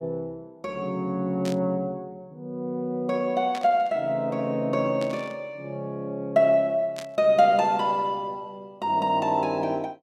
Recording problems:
static burst; 4 times, first at 1.5 s; peak -8 dB vs average level

